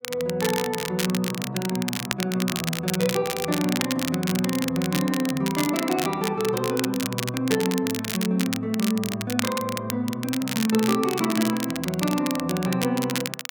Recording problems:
crackle; vinyl, SNR 5 dB

